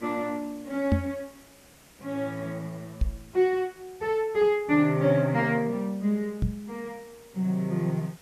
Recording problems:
hiss; slope -3 dB per octave, SNR 26 dB
microphone bump; at 1 s, at 3 s and at 6.5 s; peak +7 dB vs average level

